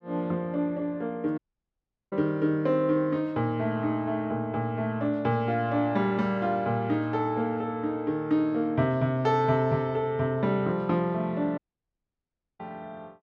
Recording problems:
audio cutting out; at 1.5 s for 0.5 s and at 12 s for 1 s

